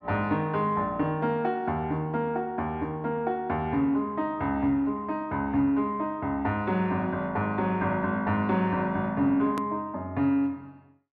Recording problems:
edit click; at 9.5 s

